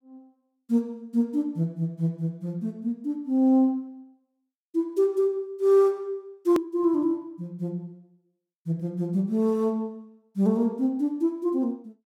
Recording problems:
click at an edit; at 6.5 s

